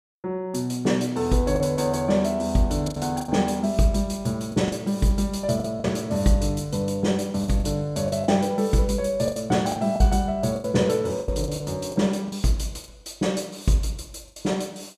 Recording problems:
lost packets; 8% of the sound replaced, filled with the last packet

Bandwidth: 14.5 kHz